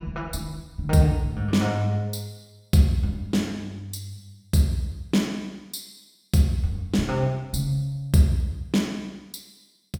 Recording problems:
none

